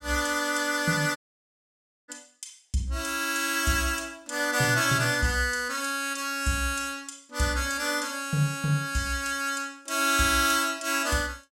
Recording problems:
audio cutting out; at 1 s for 1 s

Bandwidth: 16.5 kHz